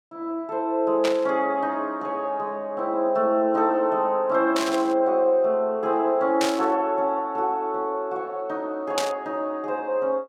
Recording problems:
burst of static; 4 times, first at 1 s; peak +2 dB vs average level

